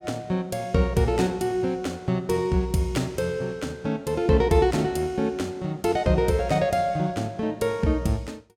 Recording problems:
none

